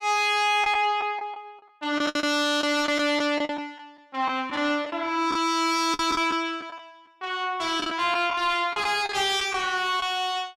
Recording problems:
distorted audio; soft clipping, signal-to-distortion ratio 9 dB
packet loss; 8% of the sound replaced, filled with the last packet

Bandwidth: 15.5 kHz